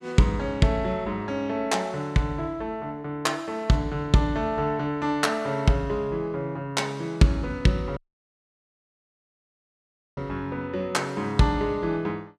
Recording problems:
dropout; at 8 s for 2 s

